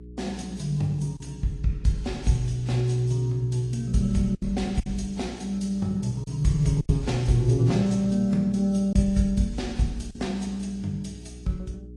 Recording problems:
codec artefacts; AAC, then Vorbis, log-spectral distance 2 dB, nothing above 10.1 kHz
mains hum; 60 Hz, harmonics up to 420 Hz, SNR 17 dB
lost packets; 3% of the sound replaced, filled with silence

